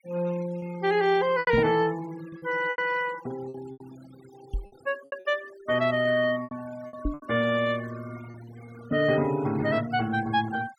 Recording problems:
noise reduction artefacts; signal-to-artefact ratio 19 dB
lost packets; 8% of the sound replaced, filled with repeated pitch periods
knock on the microphone; at 1.5 s, at 4.5 s and at 7 s; peak +1 dB vs average level

